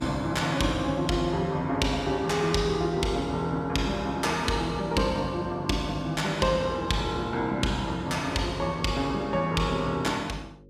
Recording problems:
hum; 50 Hz, harmonics up to 550 Hz, SNR 25 dB

